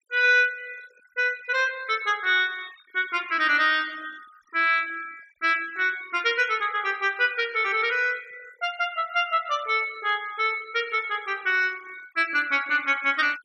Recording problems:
noise reduction artefacts; signal-to-artefact ratio 23 dB

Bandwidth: 14.5 kHz